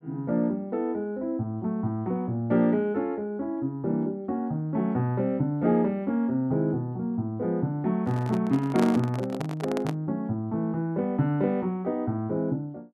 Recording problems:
handling noise; from 8 to 10 s; peak 0 dB vs average level

